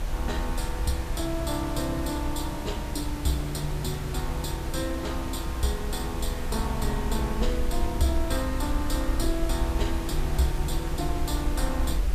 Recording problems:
hiss; slope -5 dB per octave, SNR 6 dB
low-frequency rumble; below 60 Hz, SNR 3 dB

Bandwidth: 14.5 kHz